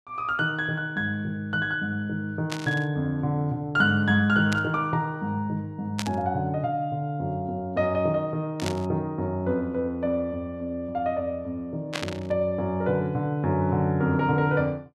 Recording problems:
static burst; 5 times, first at 2.5 s; peak 0 dB vs average level

